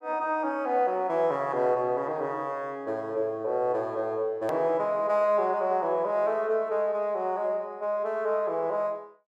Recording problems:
edit click; at 4.5 s

